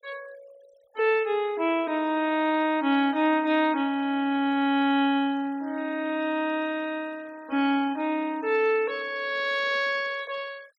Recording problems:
denoising artefacts; signal-to-artefact ratio 23 dB

